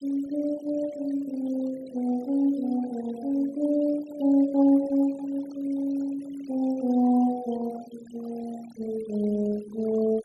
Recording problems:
denoising artefacts; signal-to-artefact ratio 20 dB

